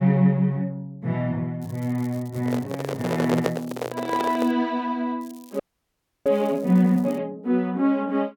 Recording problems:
crackling; from 1.5 to 4.5 s and from 5 to 7 s; loose cable, SNR 26 dB
microphone handling noise; from 2.5 to 4.5 s; peak +4 dB vs average level
audio freezing; at 5.5 s for 0.5 s

